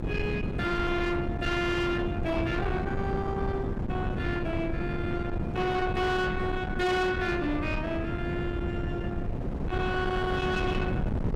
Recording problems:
distortion; soft clipping, signal-to-distortion ratio 8 dB
wind on the microphone; below 340 Hz, SNR 3 dB

